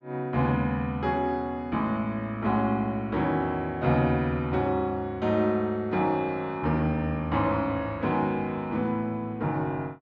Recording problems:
none

